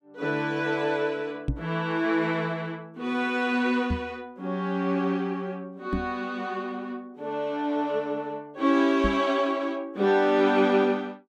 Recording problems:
microphone bump; 4 times, first at 1.5 s; peak +3 dB vs average level

